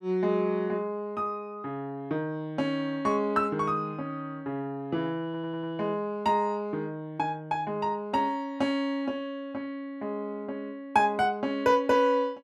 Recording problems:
stutter; at 5.5 s

